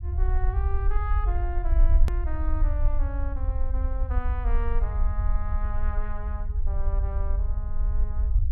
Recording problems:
rumble; below 58 Hz, SNR -11 dB
click at an edit; at 2 s

